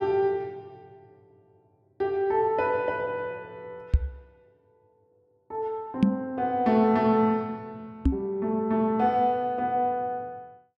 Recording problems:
microphone thump; at 4 s, at 6 s and at 8 s; peak +9 dB vs average level

